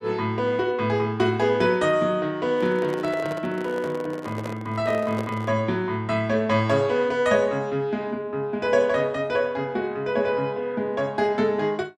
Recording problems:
microphone handling noise; from 2.5 to 5.5 s; peak -4 dB vs average level

